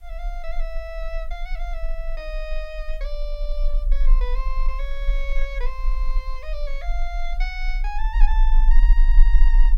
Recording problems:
background hiss; slope -1 dB per octave, SNR 28 dB
rumble; below 36 Hz, strongest tone 28 Hz, SNR -10 dB

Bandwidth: 16.5 kHz